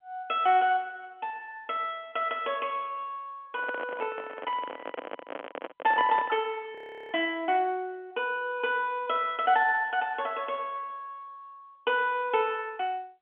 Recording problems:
telephone audio; 280 Hz to 3.3 kHz, G.711
microphone handling noise; from 3.5 to 6.5 s; peak -2 dB vs average level
audio freezing; at 7 s

